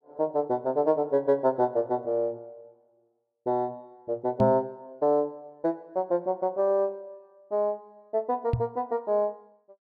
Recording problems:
microphone thump; at 4.5 s and at 8.5 s; peak +5 dB vs average level

